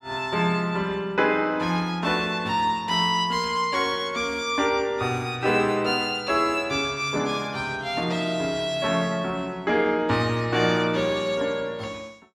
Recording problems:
none

